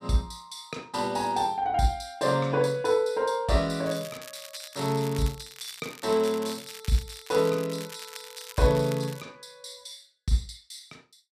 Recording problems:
crackling; from 4 to 9 s; loose cable, SNR 16 dB

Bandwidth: 14.5 kHz